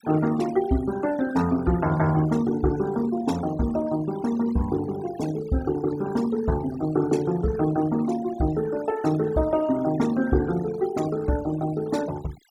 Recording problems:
noise reduction artefacts; signal-to-artefact ratio 16 dB

